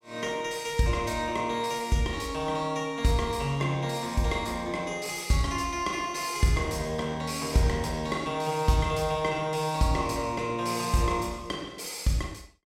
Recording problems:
none

